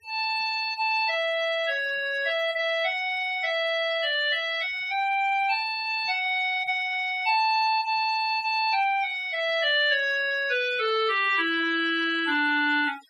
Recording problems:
denoising artefacts; signal-to-artefact ratio 19 dB

